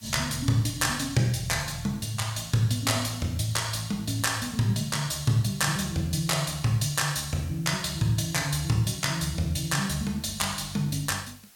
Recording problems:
hiss; slope +1 dB per octave, SNR 25 dB

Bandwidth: 17 kHz